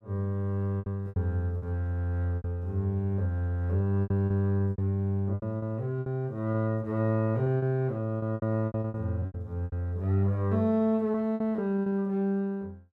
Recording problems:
lost packets; 11% of the sound replaced, filled with repeated pitch periods

